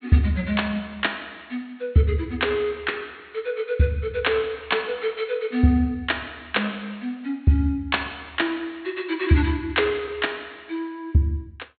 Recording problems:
treble cut off; nothing above 4.3 kHz

